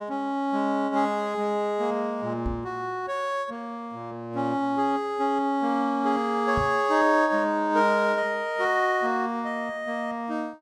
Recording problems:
microphone thump; at 2.5 s and at 6.5 s; peak -2 dB vs average level

